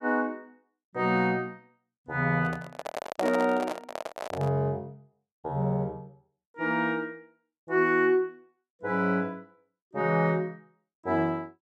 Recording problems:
handling noise; from 2.5 to 4.5 s; peak +2 dB vs average level

